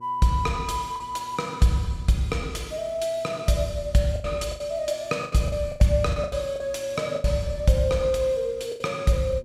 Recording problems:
hum; 60 Hz, harmonics up to 960 Hz, SNR 26 dB
packet loss; 8% of the sound replaced, filled with the last packet

